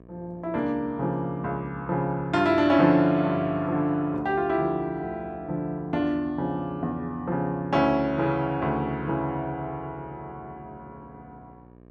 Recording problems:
mains hum; 60 Hz, harmonics up to 1.3 kHz, SNR 24 dB

